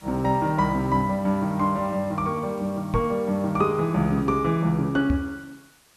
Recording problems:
background hiss; slope -1 dB per octave, SNR 27 dB
microphone thump; at 3 s and at 5 s; peak +1 dB vs average level

